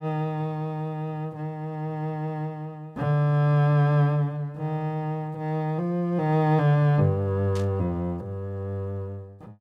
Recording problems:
burst of static; at 7.5 s; peak -11 dB vs average level

